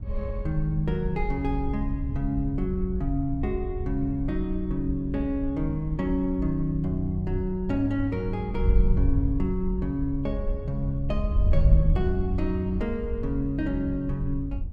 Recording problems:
wind on the microphone; below 74 Hz, SNR 2 dB

